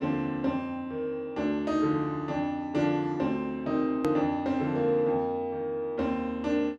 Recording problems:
edit click; at 4 s

